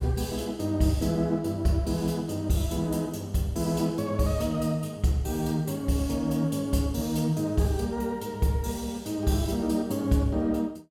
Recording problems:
none

